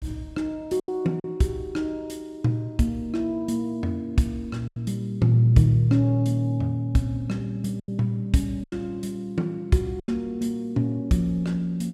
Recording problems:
lost packets; 4% of the sound replaced, filled with silence

